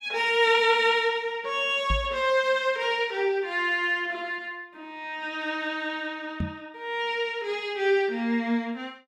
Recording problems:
microphone bump; at 2 s and at 6.5 s; peak 0 dB vs average level

